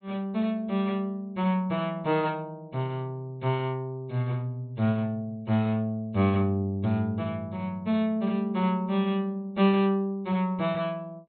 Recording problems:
treble missing; nothing above 4.3 kHz

